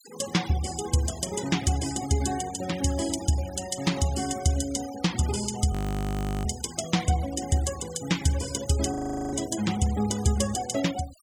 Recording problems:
denoising artefacts; signal-to-artefact ratio 14 dB
audio freezing; at 5.5 s for 0.5 s and at 9 s

